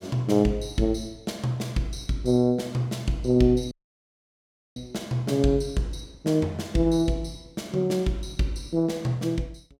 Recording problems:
audio cutting out; at 3.5 s for 1 s

